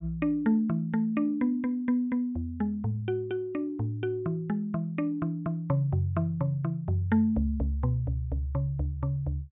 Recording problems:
treble cut off; nothing above 4 kHz

